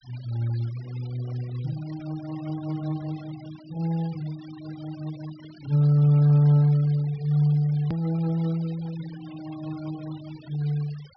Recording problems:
treble cut off; nothing above 5.5 kHz
denoising artefacts; signal-to-artefact ratio 24 dB
edit click; at 8 s

